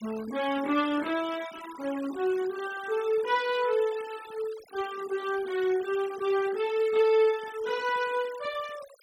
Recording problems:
noise reduction artefacts; signal-to-artefact ratio 18 dB

